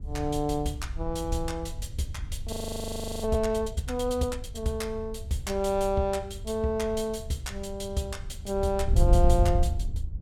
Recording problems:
wind on the microphone; below 80 Hz, SNR 3 dB
audio freezing; at 2.5 s for 0.5 s

